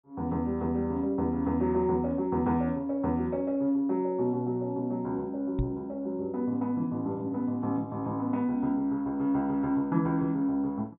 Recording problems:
treble missing; nothing above 3.8 kHz
knock on the microphone; at 5.5 s; peak +3 dB vs average level

